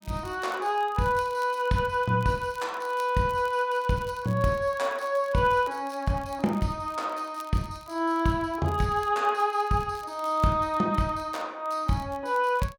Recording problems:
crackling; vinyl, SNR 26 dB

